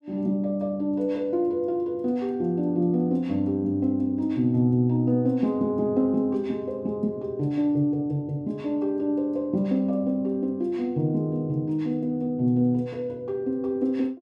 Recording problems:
none

